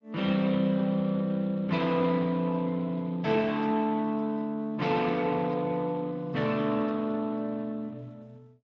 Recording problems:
lossy compression; Speex, log-spectral distance 2 dB

